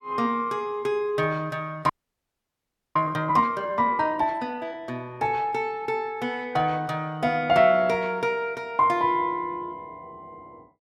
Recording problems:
audio freezing; at 2 s for 1 s

